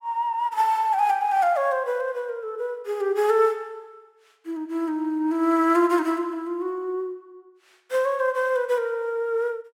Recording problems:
none

